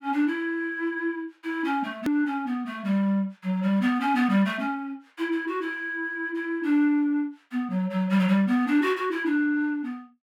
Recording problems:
edit click; at 2 s

